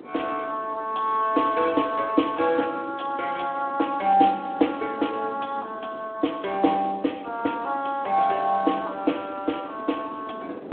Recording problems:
phone line; 220 Hz to 3.5 kHz, Speex
wind on the microphone; below 530 Hz, SNR 19 dB

